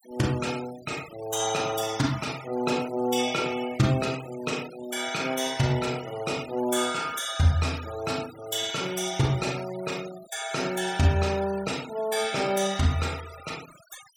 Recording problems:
denoising artefacts; signal-to-artefact ratio 15 dB

